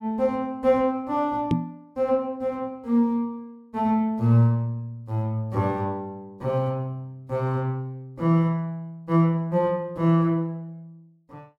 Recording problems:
knock on the microphone; at 1.5 s; peak +5 dB vs average level

